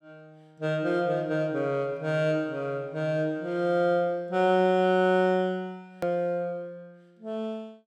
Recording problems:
click at an edit; at 6 s

